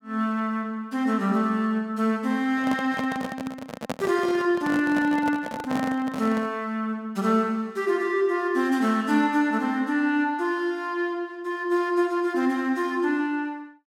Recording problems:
microphone handling noise; from 2.5 to 6.5 s; peak -1 dB vs average level

